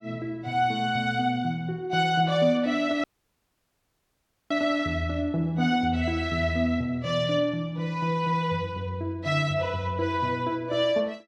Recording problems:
dropout; at 3 s for 1.5 s

